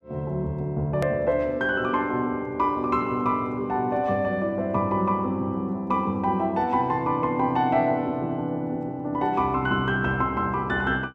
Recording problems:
edit click; at 1 s

